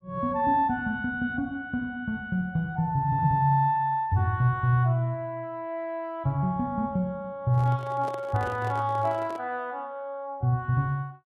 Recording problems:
microphone handling noise; from 7.5 to 9.5 s; peak -8 dB vs average level

